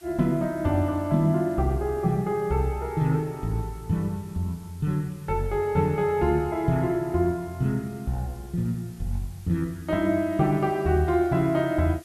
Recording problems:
hiss; SNR 27 dB

